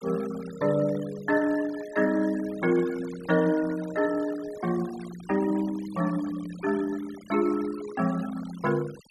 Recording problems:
denoising artefacts; signal-to-artefact ratio 18 dB

